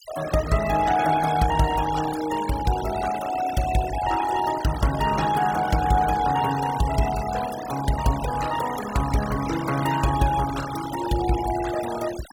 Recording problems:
noise reduction artefacts; signal-to-artefact ratio 12 dB

